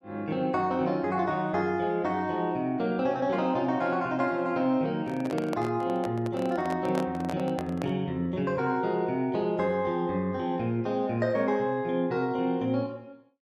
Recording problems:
handling noise; from 5 to 8 s; peak -2 dB vs average level

